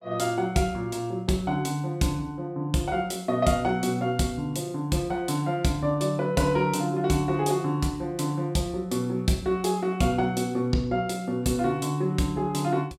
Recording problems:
none

